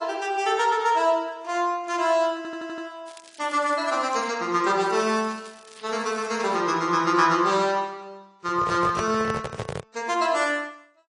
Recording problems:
lossy compression; MP3, then AAC, log-spectral distance 4 dB, nothing above 10.1 kHz
audio stuttering; at 2.5 s
crackle; from 3 to 4.5 s and from 5 to 6.5 s; loose cable, SNR 23 dB
handling noise; from 8.5 to 10 s; peak -3 dB vs average level

